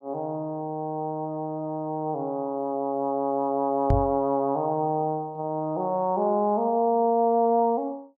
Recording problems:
knock on the microphone; at 4 s; peak +5 dB vs average level

